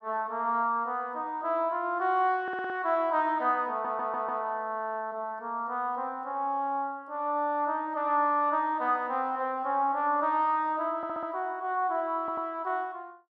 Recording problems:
audio stuttering; 4 times, first at 2.5 s

